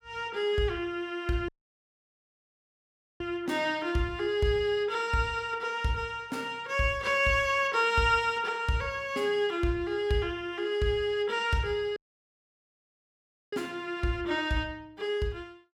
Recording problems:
audio cutting out; at 1.5 s for 1.5 s and at 12 s for 1.5 s

